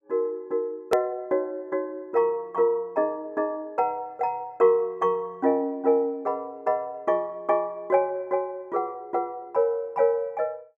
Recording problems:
hard cut with a click; at 1 s

